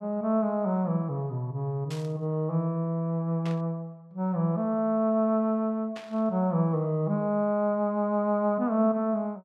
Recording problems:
static burst; at 2 s, at 3.5 s and at 6 s; peak -11 dB vs average level

